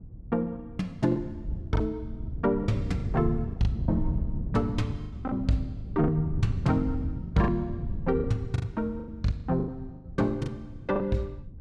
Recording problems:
wind noise; below 140 Hz, SNR 6 dB
lost packets; 10% of the sound replaced, filled with the last packet

